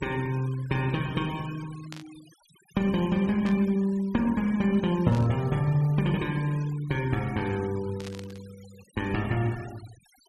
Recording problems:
noise reduction artefacts; signal-to-artefact ratio 21 dB
static burst; 4 times, first at 2 s; peak -10 dB vs average level

